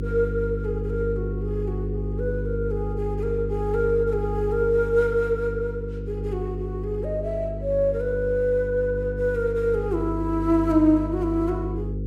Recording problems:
hum; 50 Hz, harmonics up to 500 Hz, SNR 6 dB

